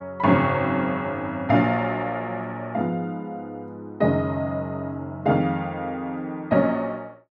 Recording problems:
none

